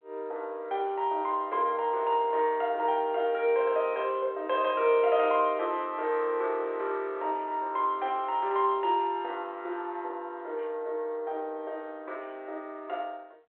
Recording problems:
phone line; 320 Hz to 3.8 kHz, G.726

